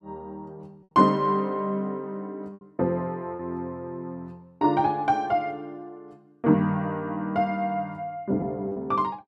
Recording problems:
lost packets; 2% of the sound replaced, filled with repeated pitch periods

